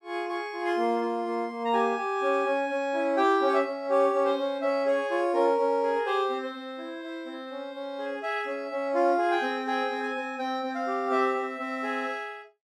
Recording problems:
none

